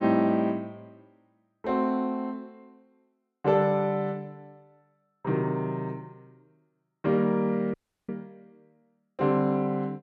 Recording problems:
audio cutting out; at 7.5 s

